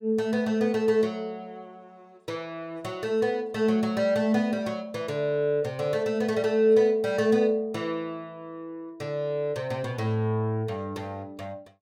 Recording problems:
none

